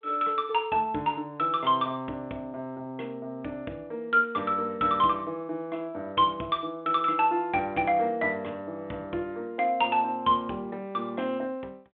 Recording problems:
telephone audio; 190 Hz to 3.5 kHz, G.726

